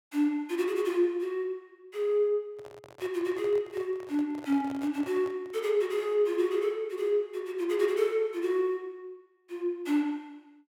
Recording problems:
microphone handling noise; from 2.5 to 5.5 s; peak -10 dB vs average level

